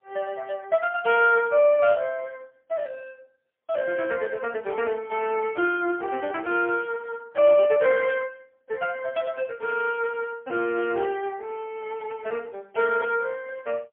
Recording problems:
phone line; 280 Hz to 3.1 kHz, AMR-NB, then MP3

